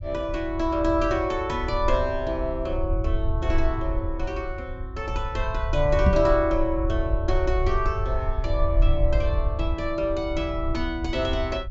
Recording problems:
treble cut off; nothing above 8 kHz
rumble; below 72 Hz, SNR 3 dB
microphone thump; at 6 s; peak +10 dB vs average level

